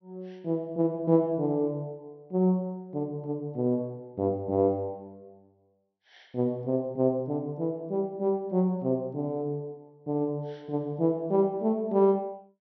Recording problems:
low-pass filter; nothing above 5.8 kHz

